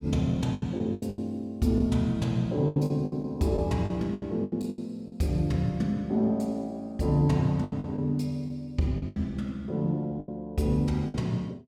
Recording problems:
packet loss; 11% of the sound replaced, filled with the last packet

